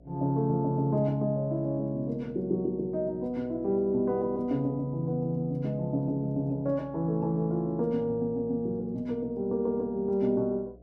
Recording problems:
hum; 60 Hz, harmonics up to 720 Hz, SNR 25 dB

